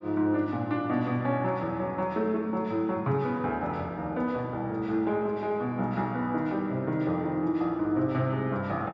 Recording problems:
treble cut off; nothing above 7.6 kHz

